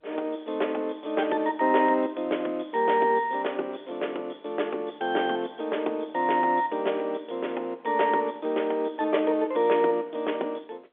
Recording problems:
telephone audio; 300 Hz to 3.5 kHz, G.711

